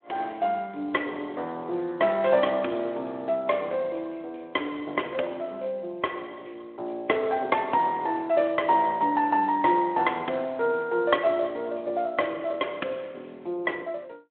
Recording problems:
phone line; 240 Hz to 3.3 kHz, Speex

